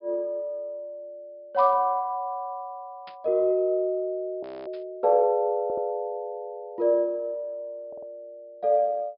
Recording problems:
treble cut off; nothing above 5.5 kHz
static burst; at 1.5 s, at 3 s and at 4.5 s; peak -15 dB vs average level
frozen audio; at 4.5 s
audio stuttering; at 5.5 s and at 8 s

